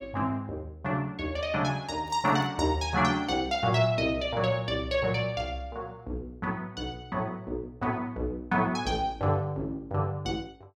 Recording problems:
crackle; at 2 s; loose cable, SNR 30 dB

